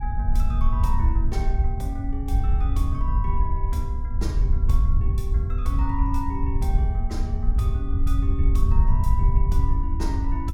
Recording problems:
wind noise; below 70 Hz, SNR -9 dB

